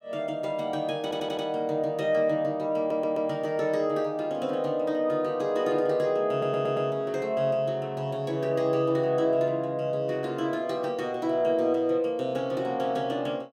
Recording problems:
audio stuttering; at 1 s, at 3 s and at 6.5 s

